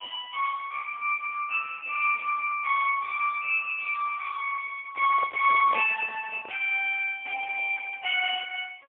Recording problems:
telephone audio; 540 Hz to 3.3 kHz, AMR-NB, then MP3
microphone handling noise; from 5 to 6.5 s; peak -8 dB vs average level

